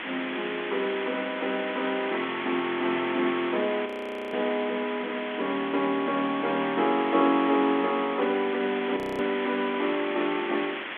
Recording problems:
telephone audio; 170 Hz to 3.7 kHz, G.726
hiss; SNR 7 dB
frozen audio; at 4 s and at 9 s

